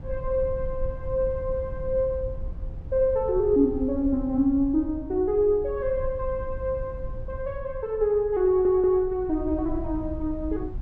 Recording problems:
rumble; below 72 Hz, SNR 12 dB
audio stuttering; at 8.5 s

